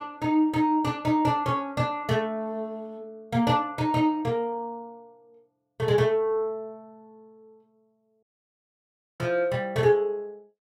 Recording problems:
dropout; at 8 s for 1 s

